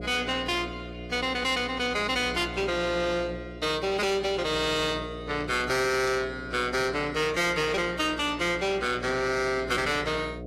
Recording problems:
lossy codec; AAC, log-spectral distance 3 dB, nothing above 17.1 kHz
distortion; soft clipping, signal-to-distortion ratio 8 dB
hum; 60 Hz, harmonics up to 720 Hz, SNR 13 dB

